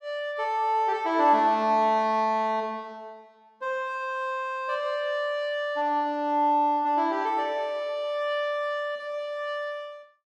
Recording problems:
none

